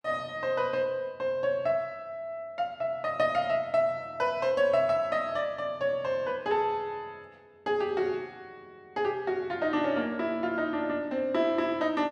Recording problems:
none

